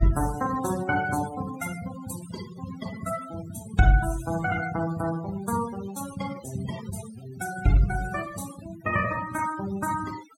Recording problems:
denoising artefacts; signal-to-artefact ratio 13 dB

